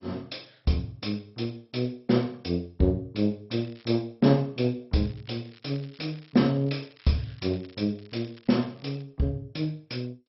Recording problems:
lossy codec; MP2, log-spectral distance 7 dB, nothing above 5.5 kHz
crackle; at 3.5 s and from 5 to 9 s; loose cable, SNR 27 dB

